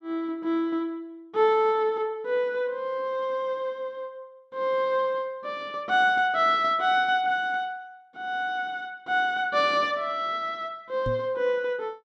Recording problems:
knock on the microphone; at 11 s; peak -3 dB vs average level

